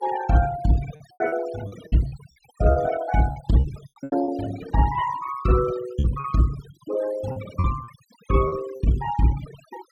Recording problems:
noise reduction artefacts; signal-to-artefact ratio 15 dB
packet loss; 9% of the sound replaced, filled with repeated pitch periods

